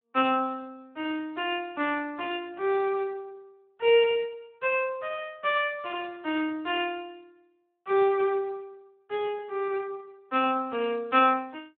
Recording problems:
telephone audio; 260 Hz to 3.6 kHz, Speex

